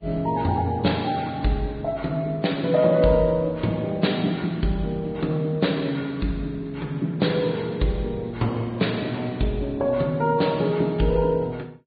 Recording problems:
low-pass filter; nothing above 4.4 kHz
codec artefacts; Vorbis, log-spectral distance 2 dB

